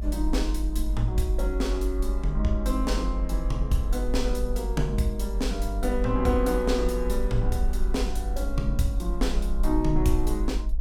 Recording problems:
hum; 60 Hz, harmonics up to 1.3 kHz, SNR 24 dB
low-frequency rumble; below 50 Hz, strongest tone 48 Hz, SNR 1 dB

